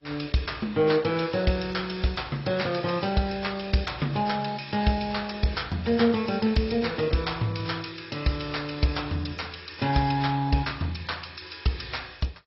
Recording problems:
lossy compression; MP2, then AAC, log-spectral distance 8 dB, nothing above 5.5 kHz

